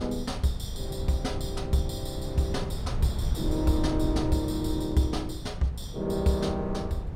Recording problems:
wind on the microphone; below 130 Hz, SNR 5 dB

